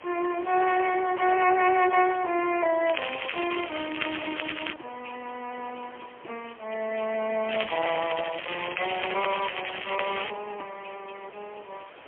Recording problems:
phone line; 280 Hz to 3.3 kHz, AMR-NB, then MP3
background hiss; SNR 20 dB
crackle; from 3 to 4.5 s and from 7.5 to 10 s; loose cable, SNR 7 dB

